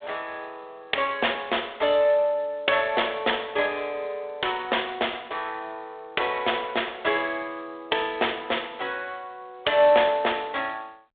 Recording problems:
phone line; 340 Hz to 3.6 kHz, G.726

